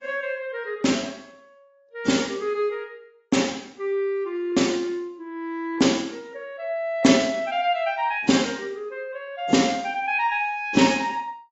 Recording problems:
lossy compression; AAC, log-spectral distance 3 dB, nothing above 7.6 kHz

